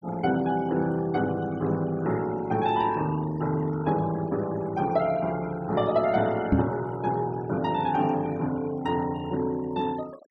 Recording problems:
noise reduction artefacts; signal-to-artefact ratio 20 dB
microphone bump; at 6.5 s; peak +8 dB vs average level

